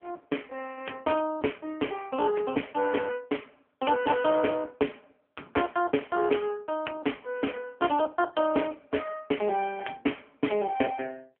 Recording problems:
telephone audio; 260 Hz to 3.2 kHz, AMR-NB

